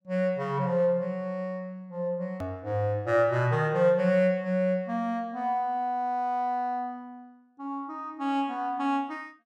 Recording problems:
click at an edit; at 2.5 s

